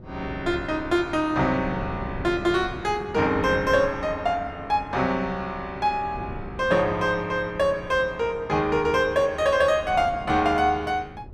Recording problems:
wind noise; below 300 Hz, SNR 15 dB

